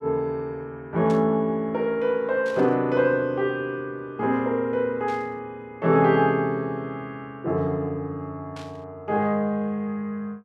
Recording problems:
burst of static; 4 times, first at 1 s; peak -14 dB vs average level

